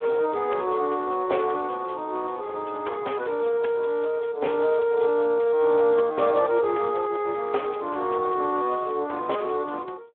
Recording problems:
phone line; 300 Hz to 3.4 kHz, Speex

